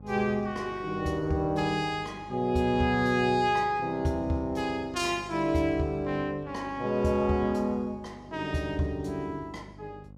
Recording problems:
electrical hum; 50 Hz, harmonics up to 850 Hz, SNR 21 dB

